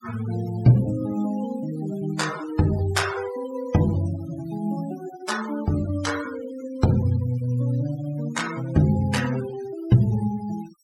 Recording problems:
denoising artefacts; signal-to-artefact ratio 15 dB

